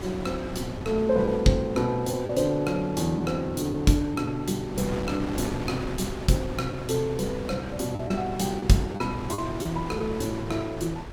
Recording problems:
hum; 60 Hz, harmonics up to 840 Hz, SNR 24 dB
wind on the microphone; below 760 Hz, SNR 10 dB
lost packets; 3% of the sound replaced, filled with the last packet

